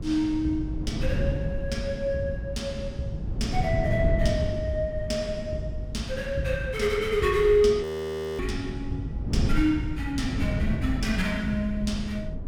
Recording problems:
wind on the microphone; below 160 Hz, SNR 5 dB
audio freezing; at 8 s for 0.5 s

